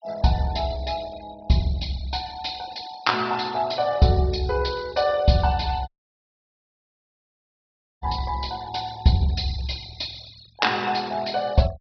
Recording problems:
treble cut off; nothing above 5.5 kHz
denoising artefacts; signal-to-artefact ratio 21 dB
dropout; at 6 s for 2 s

